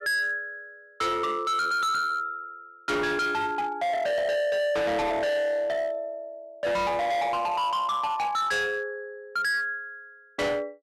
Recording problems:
distortion; hard clipping, signal-to-distortion ratio 6 dB

